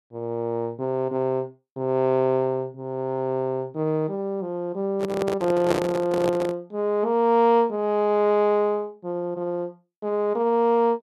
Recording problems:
handling noise; from 5 to 6.5 s; peak +3 dB vs average level

